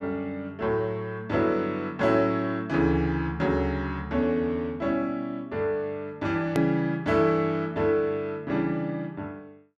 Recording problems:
hard cut with a click; at 6.5 s

